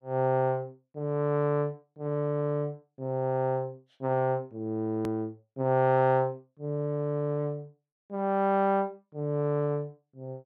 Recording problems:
click at an edit; at 5 s

